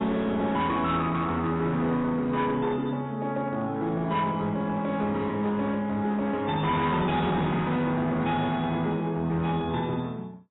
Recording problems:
lossy compression; AAC, log-spectral distance 2 dB, nothing above 3.6 kHz
distorted audio; hard clipping, signal-to-distortion ratio 10 dB

